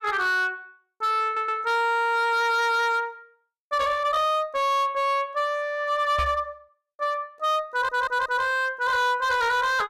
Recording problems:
distortion; hard clipping, signal-to-distortion ratio 11 dB
audio stuttering; at 1.5 s and at 7.5 s
microphone thump; at 6 s; peak -1 dB vs average level

